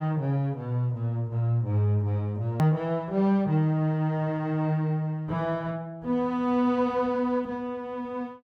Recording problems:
edit click; at 2.5 s

